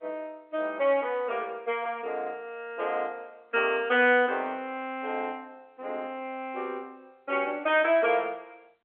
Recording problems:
phone line; 300 Hz to 3.4 kHz, G.711

